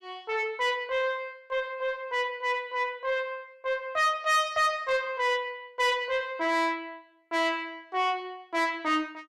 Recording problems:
distorted audio; soft clipping, signal-to-distortion ratio 10 dB

